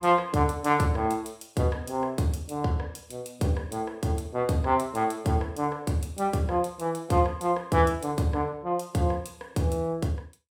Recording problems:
none

